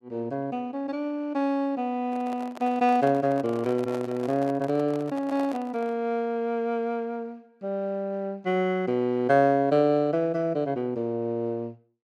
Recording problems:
microphone handling noise; from 2 to 6 s; peak -8 dB vs average level

